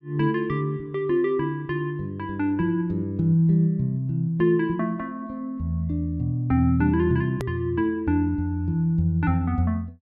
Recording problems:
click at an edit; at 7.5 s

